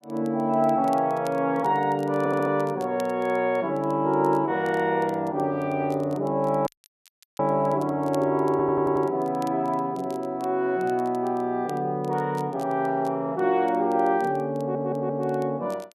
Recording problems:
crackle; vinyl, SNR 28 dB
stutter; at 2 s, at 8.5 s and at 15 s
audio cutting out; at 6.5 s for 0.5 s

